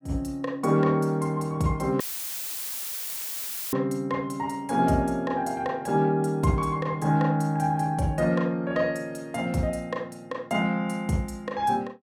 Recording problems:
dropout; at 2 s for 1.5 s; filled with static

